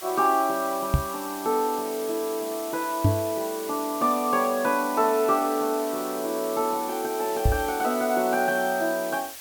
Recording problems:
background hiss; slope +1 dB per octave, SNR 11 dB
knock on the microphone; at 1 s, at 3 s and at 7.5 s; peak +7 dB vs average level

